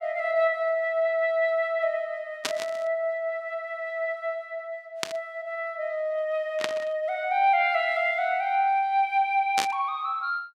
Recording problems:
burst of static; 4 times, first at 2.5 s; peak +3 dB vs average level

